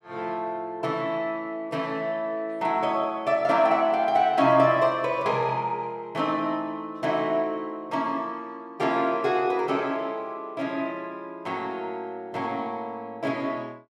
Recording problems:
none

